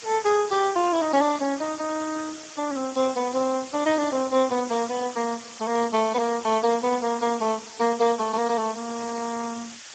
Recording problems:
lossy compression; Speex, log-spectral distance 14 dB, nothing above 7.3 kHz
hiss; slope +2 dB per octave, SNR 14 dB

